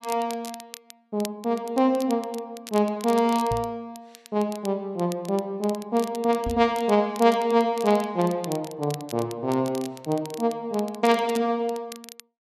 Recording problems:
crackling; vinyl, SNR 18 dB
knock on the microphone; at 3.5 s and at 6.5 s; peak -3 dB vs average level

